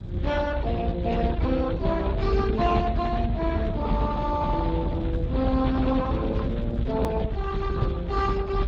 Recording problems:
lossy compression; Speex, log-spectral distance 2 dB, nothing above 18.9 kHz
rumble; below 120 Hz, SNR 3 dB
edit click; at 7 s

